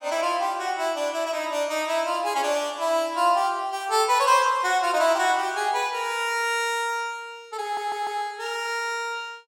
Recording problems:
stutter; at 7.5 s

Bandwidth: 17.5 kHz